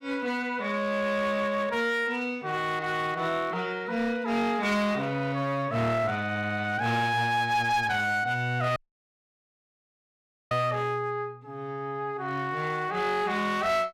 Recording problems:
distortion; hard clipping, uneven, signal-to-distortion ratio 11 dB
audio cutting out; at 9 s for 2 s

